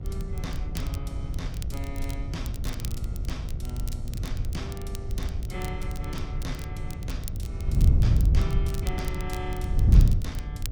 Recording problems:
mains hum; 60 Hz, harmonics up to 2.8 kHz, SNR 13 dB
wind on the microphone; below 100 Hz, SNR -10 dB
crackle; vinyl, SNR 7 dB

